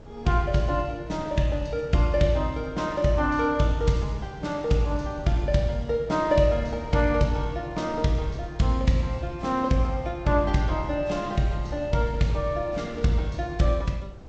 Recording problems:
codec artefacts; Vorbis, then G.722, log-spectral distance 2 dB
wind on the microphone; below 250 Hz, SNR 19 dB

